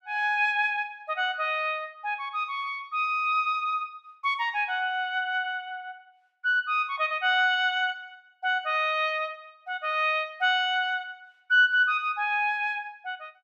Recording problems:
none

